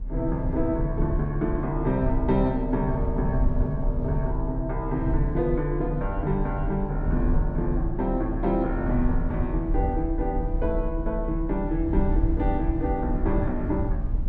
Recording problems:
rumble; below 68 Hz, strongest tone 36 Hz, SNR 3 dB

